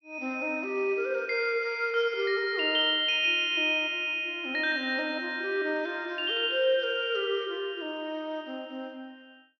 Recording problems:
treble cut off; nothing above 5.9 kHz

